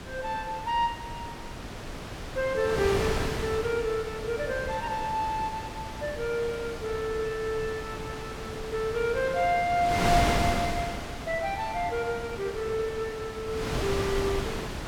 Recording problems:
wind noise; below 1.6 kHz, SNR 4 dB

